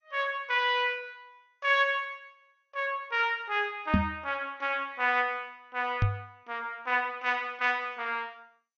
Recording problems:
codec artefacts; MP2, log-spectral distance 2 dB, nothing above 6.3 kHz
microphone bump; at 4 s and at 6 s; peak +8 dB vs average level

